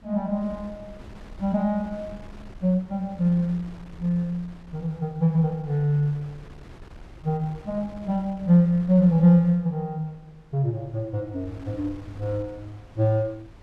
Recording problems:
wind noise; below 340 Hz, SNR 22 dB

